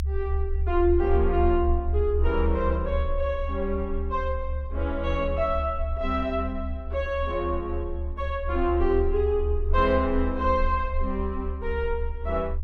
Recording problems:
rumble; below 72 Hz, strongest tone 26 Hz, SNR 3 dB

